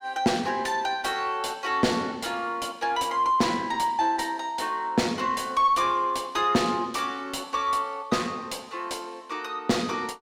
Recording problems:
distorted audio; soft clipping, signal-to-distortion ratio 11 dB

